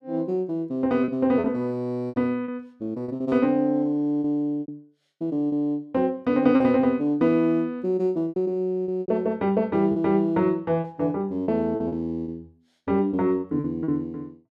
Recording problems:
lost packets; 8% of the sound replaced, filled with repeated pitch periods

